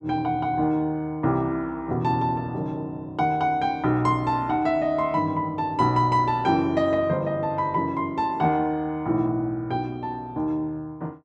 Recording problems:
none

